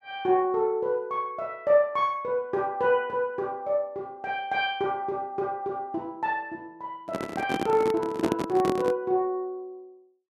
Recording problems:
handling noise; from 7 to 9 s; peak +4 dB vs average level

